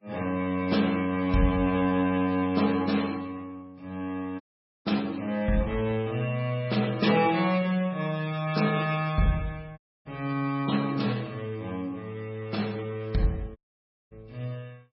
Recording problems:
lossy codec; MP3, then MP3, log-spectral distance 3 dB, nothing above 5.3 kHz
audio cutting out; at 4.5 s, at 10 s and at 14 s for 0.5 s

